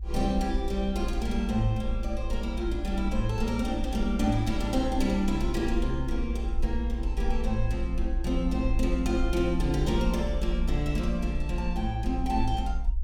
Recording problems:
rumble; below 56 Hz, SNR 3 dB

